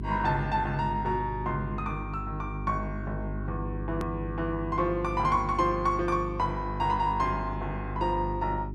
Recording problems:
electrical hum; 50 Hz, harmonics up to 400 Hz, SNR 6 dB
edit click; at 4 s

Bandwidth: 12.5 kHz